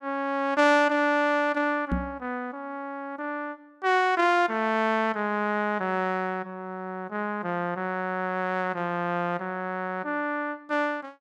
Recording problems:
microphone bump; at 2 s; peak +3 dB vs average level

